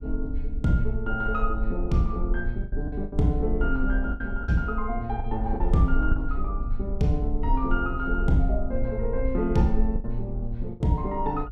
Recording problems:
low-frequency rumble; below 46 Hz, strongest tone 24 Hz, SNR 4 dB
lost packets; 5% of the sound replaced, filled with the last packet

